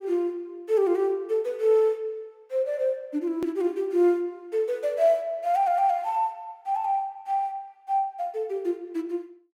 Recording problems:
edit click; at 3.5 s

